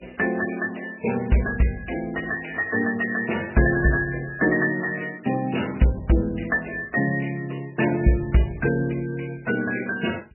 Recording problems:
codec artefacts; MP3, log-spectral distance 9 dB, nothing above 2.8 kHz

